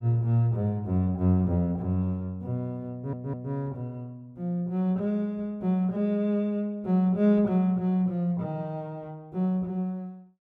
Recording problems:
audio stuttering; at 3 s

